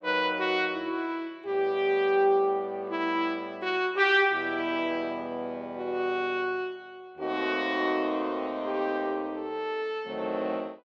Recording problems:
none

